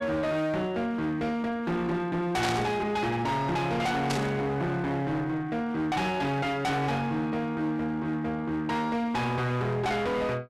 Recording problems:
distortion; hard clipping, uneven, signal-to-distortion ratio 7 dB
static burst; at 2.5 s and at 4 s; peak 0 dB vs average level

